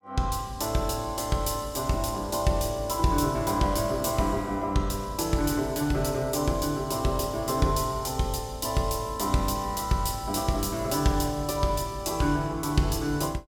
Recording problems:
none

